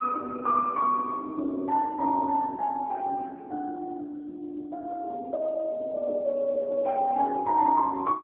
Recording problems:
telephone audio; 260 Hz to 2.2 kHz, AMR-NB

